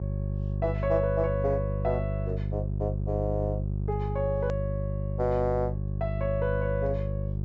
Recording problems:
treble missing; nothing above 7.4 kHz
mains hum; 50 Hz, harmonics up to 400 Hz, SNR 0 dB
edit click; at 4.5 s

